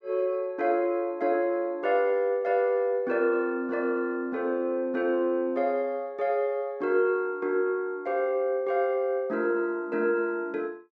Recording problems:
none

